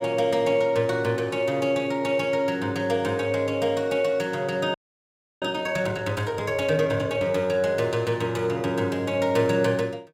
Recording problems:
audio freezing; at 4.5 s for 0.5 s

